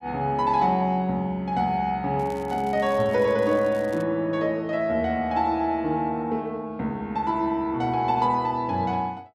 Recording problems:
crackle; from 2 to 4 s; loose cable, SNR 26 dB

